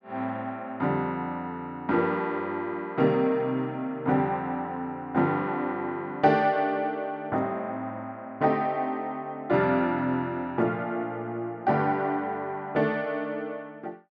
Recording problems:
none

